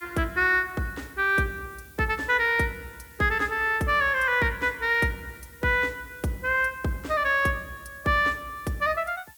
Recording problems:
hiss; slope +3 dB per octave, SNR 26 dB

